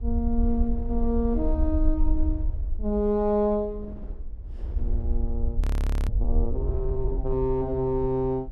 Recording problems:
low-frequency rumble; below 62 Hz, SNR 2 dB
wind on the microphone; below 400 Hz, SNR 20 dB
frozen audio; at 5.5 s

